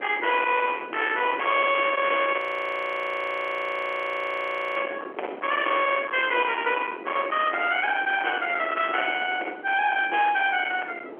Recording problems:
phone line; 280 Hz to 3.3 kHz, G.711
distorted audio; hard clipping, uneven, signal-to-distortion ratio 8 dB
wind on the microphone; below 2.2 kHz, SNR 10 dB
audio freezing; at 2.5 s for 2.5 s

